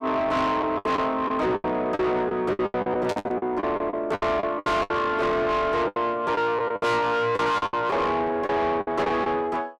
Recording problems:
distortion; soft clipping, signal-to-distortion ratio 7 dB
lost packets; 15% of the sound replaced, filled with the last packet
burst of static; at 3 s; peak -6 dB vs average level

